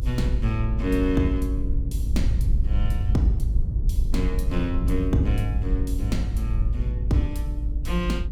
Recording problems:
low-frequency rumble; below 68 Hz, SNR -2 dB

